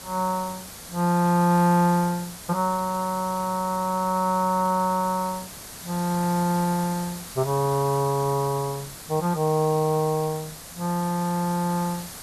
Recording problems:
hiss; SNR 13 dB

